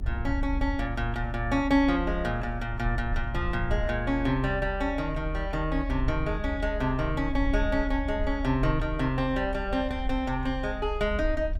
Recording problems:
low-frequency rumble; below 66 Hz, strongest tone 40 Hz, SNR 6 dB

